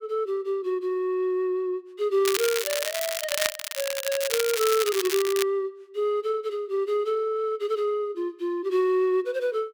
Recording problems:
crackle; from 2.5 to 5.5 s; loose cable, SNR 3 dB

